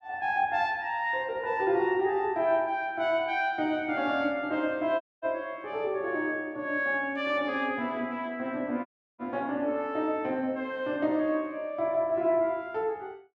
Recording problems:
audio cutting out; at 5 s and at 9 s

